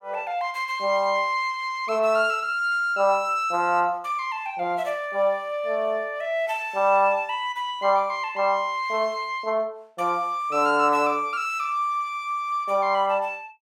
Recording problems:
none

